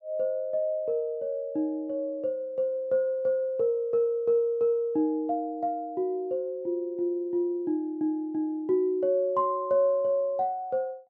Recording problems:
none

